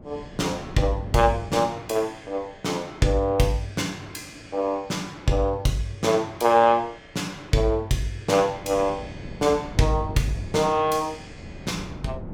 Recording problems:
wind on the microphone; below 280 Hz, SNR 16 dB

